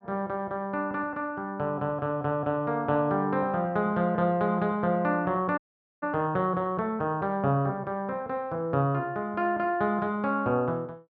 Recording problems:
audio cutting out; at 5.5 s

